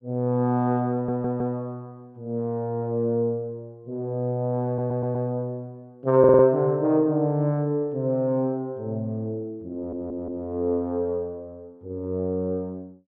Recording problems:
audio stuttering; 4 times, first at 1 s

